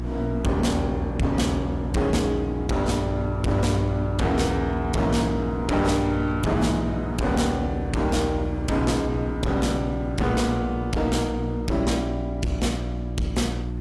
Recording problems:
lossy compression; AAC, log-spectral distance 2 dB, nothing above 11.6 kHz
distorted audio; hard clipping, signal-to-distortion ratio 8 dB
hum; 60 Hz, harmonics up to 360 Hz, SNR 6 dB
wind on the microphone; below 800 Hz, SNR 21 dB

